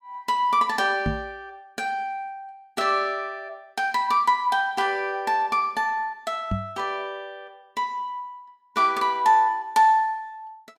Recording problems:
microphone bump; at 1 s and at 6.5 s; peak +1 dB vs average level

